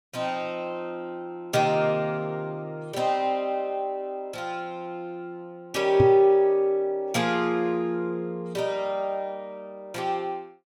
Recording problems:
microphone thump; at 6 s; peak +5 dB vs average level

